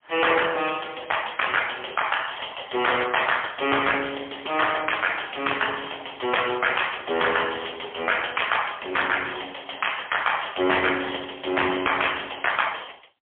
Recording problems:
telephone audio; 300 Hz to 3.4 kHz, AMR-NB, then MP3
distorted audio; hard clipping, signal-to-distortion ratio 12 dB

